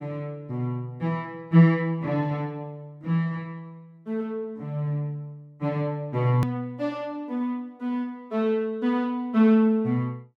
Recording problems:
hard cut with a click; at 6.5 s

